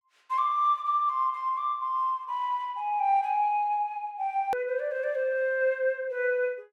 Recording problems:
click at an edit; at 4.5 s

